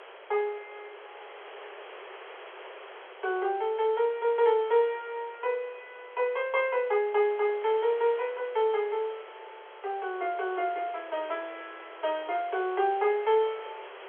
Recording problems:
telephone audio; 340 Hz to 3.4 kHz, G.711
hiss; SNR 18 dB

